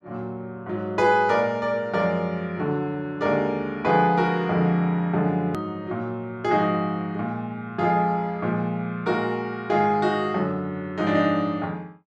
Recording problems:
click at an edit; at 5.5 s

